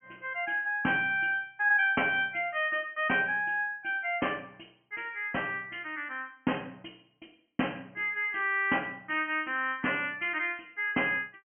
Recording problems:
treble missing; nothing above 3.1 kHz

